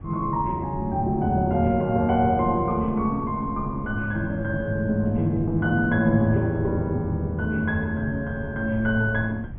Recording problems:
treble missing; nothing above 3.4 kHz
low-frequency rumble; below 130 Hz, SNR 15 dB

